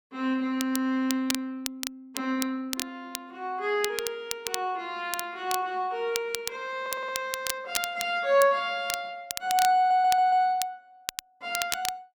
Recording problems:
crackle; vinyl, SNR 7 dB
audio stuttering; at 7 s and at 10 s

